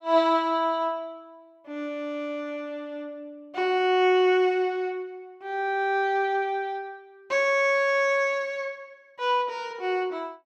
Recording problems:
none

